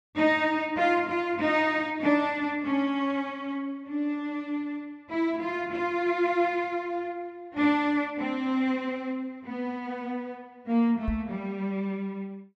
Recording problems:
microphone thump; at 11 s; peak 0 dB vs average level

